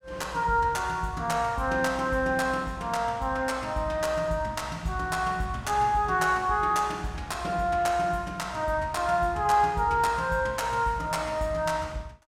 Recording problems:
none

